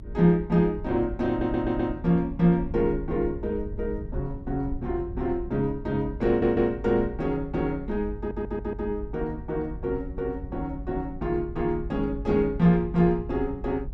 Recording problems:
low-frequency rumble; below 84 Hz, SNR 12 dB
stutter; at 1.5 s, at 6.5 s and at 8 s

